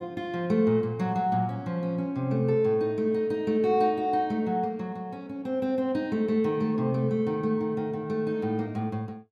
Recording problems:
none

